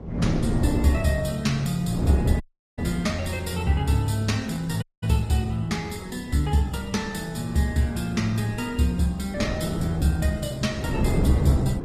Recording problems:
lossy codec; Opus, log-spectral distance 3 dB, nothing above 14.7 kHz
wind on the microphone; below 290 Hz, SNR 5 dB
audio cutting out; at 2.5 s and at 5 s

